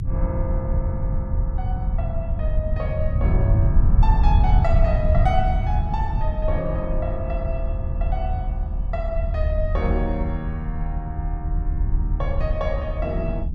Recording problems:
rumble; below 84 Hz, SNR -6 dB

